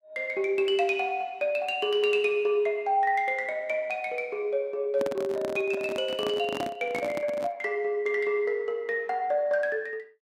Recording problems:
microphone handling noise; from 5 to 7.5 s; peak -2 dB vs average level

